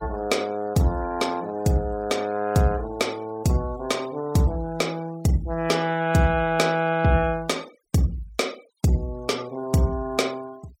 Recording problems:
denoising artefacts; signal-to-artefact ratio 24 dB

